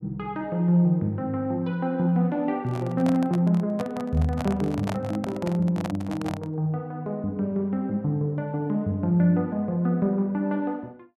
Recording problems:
microphone handling noise; from 2.5 to 6.5 s; peak -2 dB vs average level

